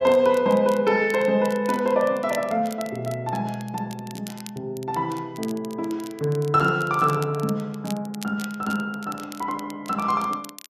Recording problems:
crackle; vinyl, SNR 19 dB

